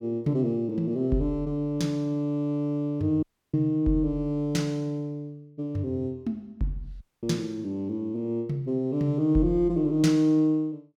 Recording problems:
dropout; at 3 s and at 7 s

